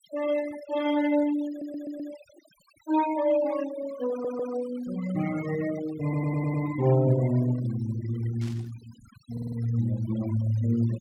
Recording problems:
denoising artefacts; signal-to-artefact ratio 16 dB
stutter; 4 times, first at 1.5 s
static burst; at 8.5 s; peak -16 dB vs average level

